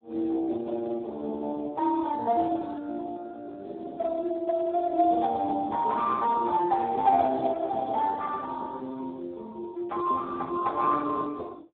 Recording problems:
telephone audio; 260 Hz to 2.3 kHz, Speex

